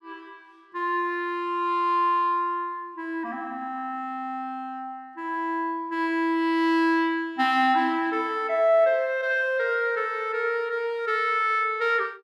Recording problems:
none

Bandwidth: 15 kHz